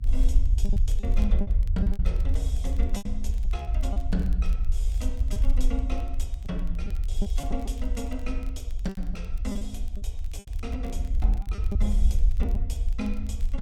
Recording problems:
hum; 60 Hz, harmonics up to 300 Hz, SNR 19 dB
rumble; below 58 Hz, SNR -8 dB
crackling; vinyl, SNR 21 dB
packet loss; 7% of the sound replaced, filled with repeated pitch periods

